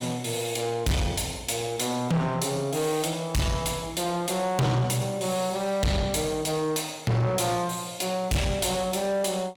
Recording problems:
distorted audio; soft clipping, signal-to-distortion ratio 6 dB

